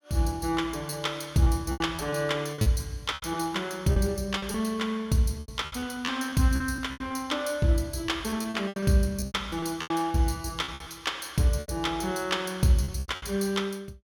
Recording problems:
lost packets; 12% of the sound replaced, filled with repeated pitch periods

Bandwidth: 17.5 kHz